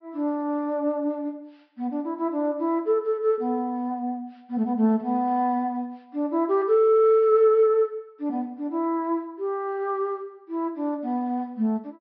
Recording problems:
treble cut off; nothing above 5.5 kHz

